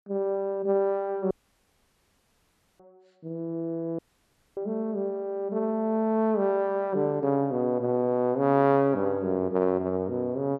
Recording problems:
dropout; at 1.5 s for 1.5 s and at 4 s for 0.5 s

